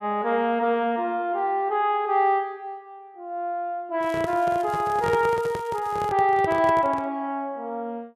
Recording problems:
microphone handling noise; from 4 to 7 s; peak -3 dB vs average level
crackle; from 4 to 6 s; loose cable, SNR 26 dB

